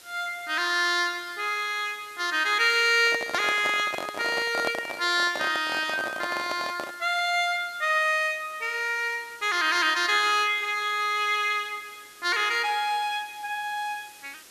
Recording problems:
background hiss; SNR 23 dB
microphone handling noise; from 3 to 7 s; peak -1 dB vs average level

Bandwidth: 14 kHz